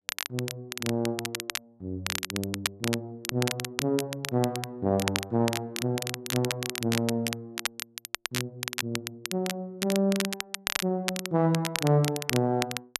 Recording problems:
crackling; vinyl, SNR 4 dB

